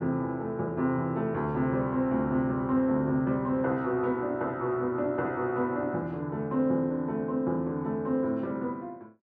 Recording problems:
none

